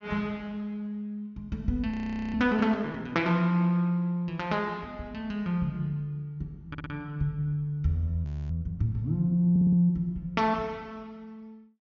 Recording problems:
low-pass filter; nothing above 6.9 kHz
audio freezing; at 2 s and at 8.5 s
stutter; at 6.5 s and at 9.5 s

